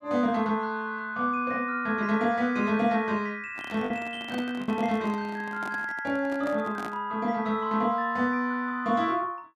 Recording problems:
packet loss; 1.1% of the sound replaced, filled with the last packet
handling noise; from 3.5 to 7 s; peak -5 dB vs average level

